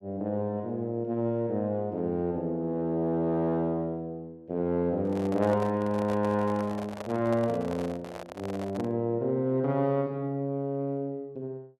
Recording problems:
microphone handling noise; from 5 to 9 s; peak -6 dB vs average level

